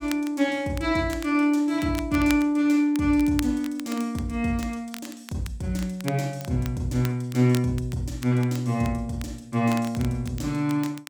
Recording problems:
crackle; vinyl, SNR 18 dB

